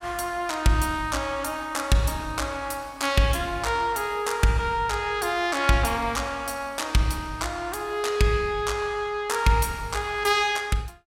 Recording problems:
none

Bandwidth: 16.5 kHz